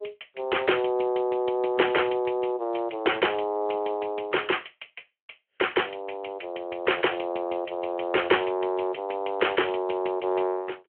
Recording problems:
phone line; 300 Hz to 3.3 kHz, Speex

